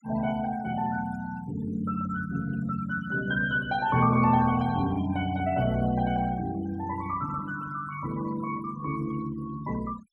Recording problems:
noise reduction artefacts; signal-to-artefact ratio 18 dB

